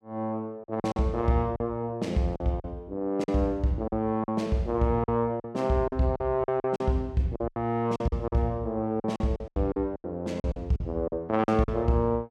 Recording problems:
packet loss; 12% of the sound replaced, filled with silence

